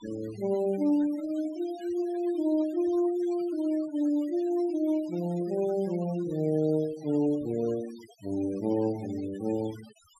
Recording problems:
denoising artefacts; signal-to-artefact ratio 20 dB

